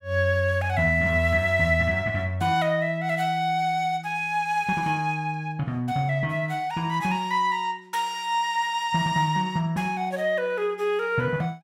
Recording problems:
none

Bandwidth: 16 kHz